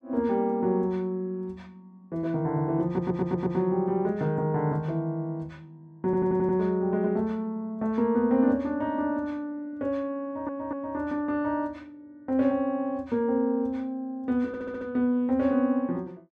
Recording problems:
audio stuttering; 4 times, first at 3 s

